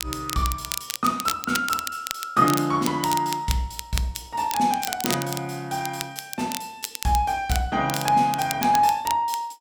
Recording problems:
crackling; vinyl, SNR 8 dB

